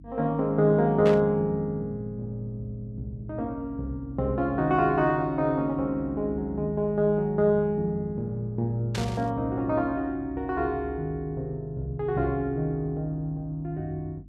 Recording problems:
mains hum; 50 Hz, harmonics up to 300 Hz, SNR 20 dB
burst of static; at 1 s and at 9 s; peak -3 dB vs average level

